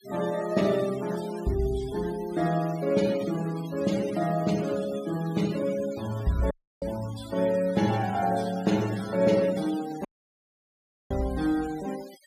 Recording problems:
noise reduction artefacts; signal-to-artefact ratio 16 dB
audio cutting out; at 6.5 s and at 10 s for 1 s

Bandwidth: 15.5 kHz